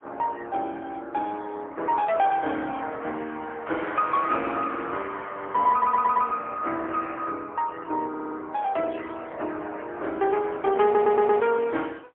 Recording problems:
telephone audio; 280 Hz to 3.4 kHz, AMR-NB, then MP3
audio stuttering; at 5.5 s, at 8 s and at 11 s

